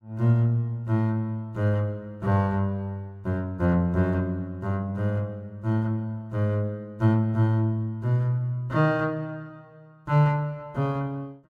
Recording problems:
none

